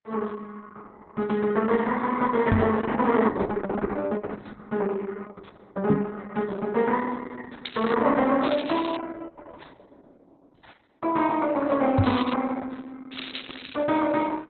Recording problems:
codec artefacts; Opus, log-spectral distance 6 dB, nothing above 4 kHz
knock on the microphone; at 2.5 s, at 6 s and at 12 s; peak +9 dB vs average level
crackling; 4 times, first at 7.5 s; loose cable, SNR 15 dB

